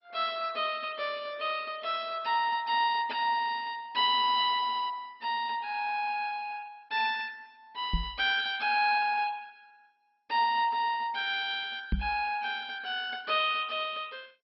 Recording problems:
codec artefacts; MP2, log-spectral distance 4 dB, nothing above 4.6 kHz
microphone thump; at 8 s and at 12 s; peak +3 dB vs average level

